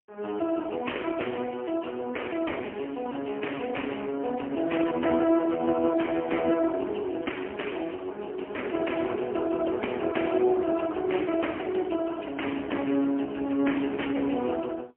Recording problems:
telephone audio; 240 Hz to 3.2 kHz, AMR-NB, then MP3

